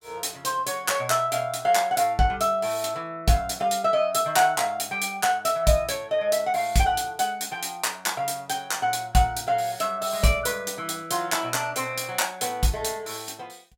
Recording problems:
none

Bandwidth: 17 kHz